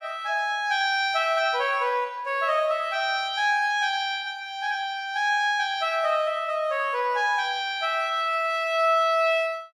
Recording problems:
none

